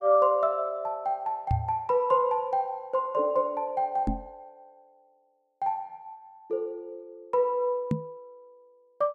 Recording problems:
microphone bump; at 1.5 s, at 4 s and at 8 s; peak +4 dB vs average level

